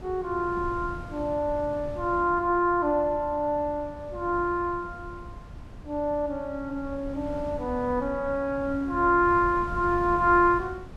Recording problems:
wind noise; below 200 Hz, SNR 15 dB

